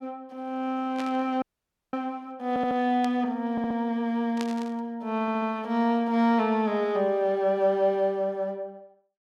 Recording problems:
burst of static; at 1 s, at 3 s and at 4.5 s; peak -6 dB vs average level
audio freezing; at 1.5 s for 0.5 s
stutter; at 2.5 s, at 3.5 s and at 5 s

